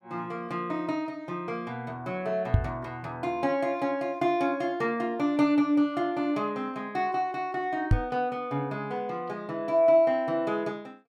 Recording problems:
knock on the microphone; at 2.5 s and at 8 s; peak +10 dB vs average level

